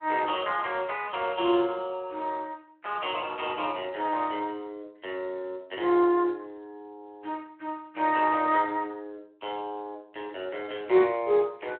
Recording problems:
telephone audio; 320 Hz to 3.6 kHz, Speex

